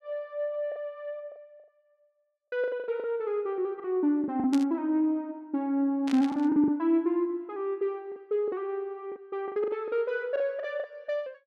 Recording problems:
lost packets; 9% of the sound replaced, filled with the last packet
burst of static; at 4.5 s and at 6 s; peak -5 dB vs average level

